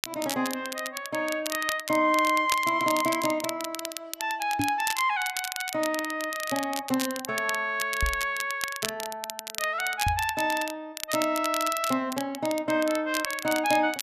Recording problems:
crackle; vinyl, SNR 8 dB
microphone bump; at 4.5 s, at 8 s and at 10 s; peak +2 dB vs average level

